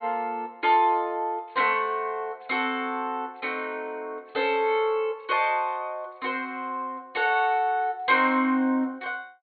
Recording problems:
treble cut off; nothing above 4.4 kHz

